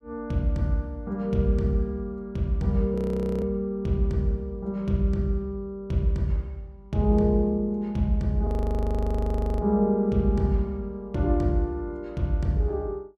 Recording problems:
audio freezing; at 3 s and at 8.5 s for 1 s

